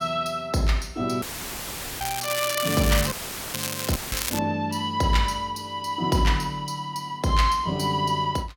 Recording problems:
audio cutting out; at 1 s for 1 s, at 3 s and at 4 s; filled with static
crackling; from 2 to 4.5 s; loose cable, SNR 4 dB

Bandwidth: 17 kHz